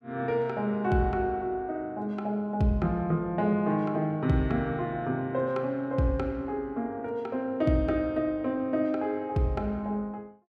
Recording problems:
none

